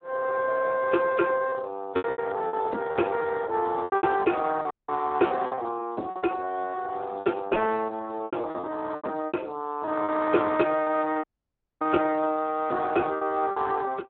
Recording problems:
telephone audio; 220 Hz to 2.5 kHz, Speex
packet loss; 10% of the sound replaced, filled with repeated pitch periods
dropout; at 4.5 s and at 11 s for 0.5 s

